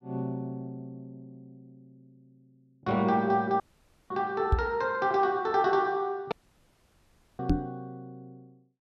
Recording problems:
dropout; at 3.5 s and at 6.5 s for 1 s
knock on the microphone; at 4.5 s and at 7.5 s; peak +7 dB vs average level

